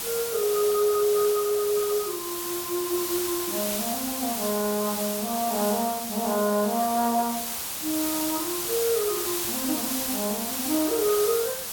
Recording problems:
codec artefacts; MP2, log-spectral distance 2 dB
background hiss; slope 0 dB per octave, SNR 2 dB

